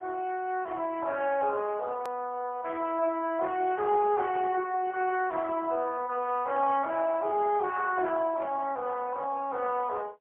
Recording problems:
telephone audio; 340 Hz to 3.3 kHz, AMR-NB, then MP3
edit click; at 2 s

